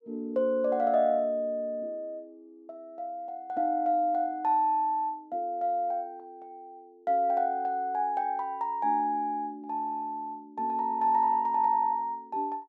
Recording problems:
none

